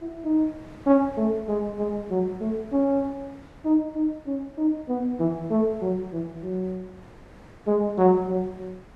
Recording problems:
wind on the microphone; below 760 Hz, SNR 23 dB

